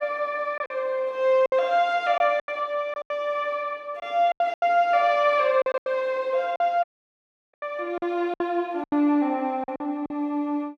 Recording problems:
packet loss; 10% of the sound replaced, filled with silence
dropout; at 7 s for 0.5 s

